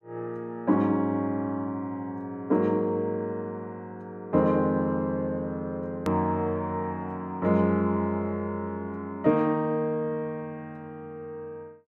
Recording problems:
hard cut with a click; at 6 s

